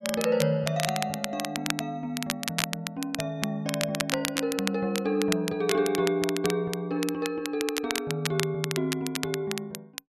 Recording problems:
crackle; vinyl, SNR 4 dB

